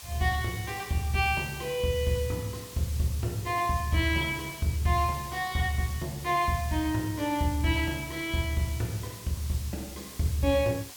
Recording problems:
background hiss; slope +2 dB per octave, SNR 14 dB

